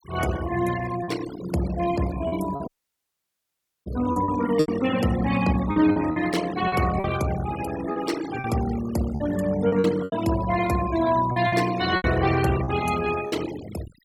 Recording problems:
denoising artefacts; signal-to-artefact ratio 13 dB
packet loss; 9% of the sound replaced, filled with repeated pitch periods
dropout; at 2.5 s for 1 s

